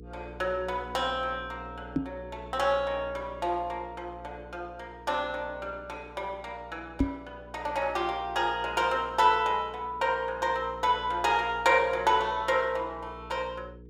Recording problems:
hum; 60 Hz, harmonics up to 480 Hz, SNR 19 dB
knock on the microphone; at 2 s and at 7 s; peak +7 dB vs average level

